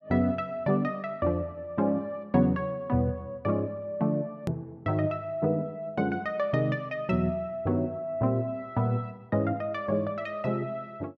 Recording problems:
edit click; at 4.5 s

